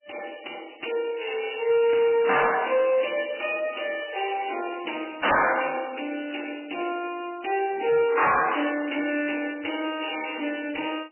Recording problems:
lossy compression; MP3, log-spectral distance 12 dB, nothing above 2.9 kHz
distorted audio; hard clipping, signal-to-distortion ratio 10 dB

